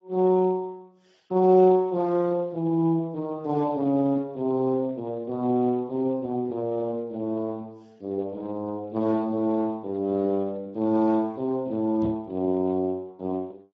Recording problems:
lossy codec; Speex, log-spectral distance 2 dB
knock on the microphone; at 12 s; peak -5 dB vs average level

